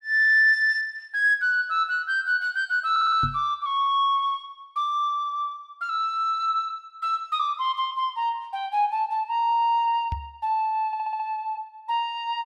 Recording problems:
audio stuttering; at 3 s and at 11 s
knock on the microphone; at 3 s and at 10 s; peak -4 dB vs average level

